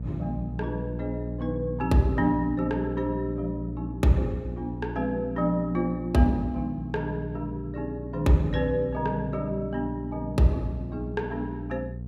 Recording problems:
hum; 60 Hz, harmonics up to 480 Hz, SNR 8 dB

